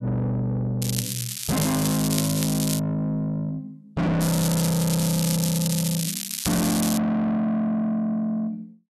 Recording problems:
distortion; soft clipping, signal-to-distortion ratio 6 dB
crackling; from 1 to 3 s and from 4 to 7 s; loose cable, SNR 4 dB

